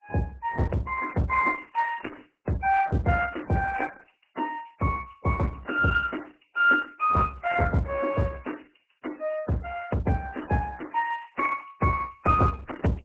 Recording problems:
lossy compression; MP3, then Opus, log-spectral distance 8 dB, nothing above 7.8 kHz

